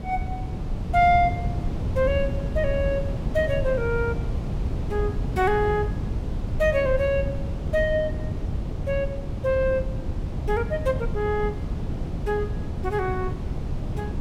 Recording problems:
wind on the microphone; below 160 Hz, SNR 4 dB

